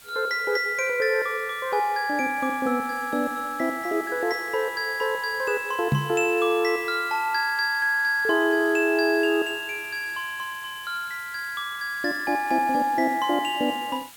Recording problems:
background hiss; slope +1 dB per octave, SNR 20 dB
microphone thump; at 6 s; peak +5 dB vs average level

